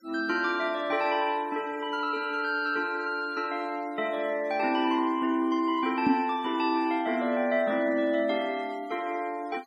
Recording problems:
noise reduction artefacts; signal-to-artefact ratio 25 dB
microphone bump; at 6 s; peak +8 dB vs average level

